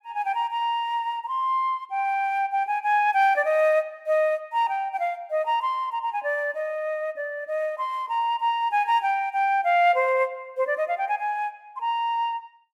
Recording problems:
none

